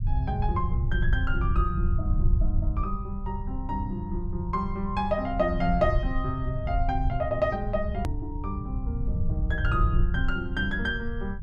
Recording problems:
rumble; below 88 Hz, SNR 0 dB
edit click; at 8 s

